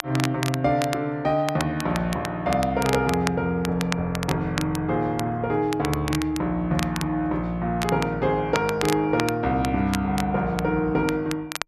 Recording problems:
crackle; vinyl, SNR 10 dB

